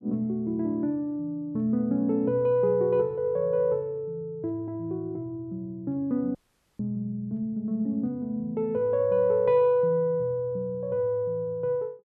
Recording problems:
audio cutting out; at 6.5 s

